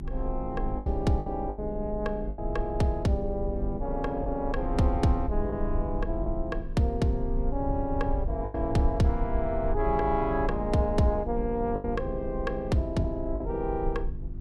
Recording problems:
hum; 50 Hz, harmonics up to 400 Hz, SNR 11 dB
rumble; below 62 Hz, strongest tone 26 Hz, SNR 7 dB
packet loss; 4% of the sound replaced, filled with the last packet

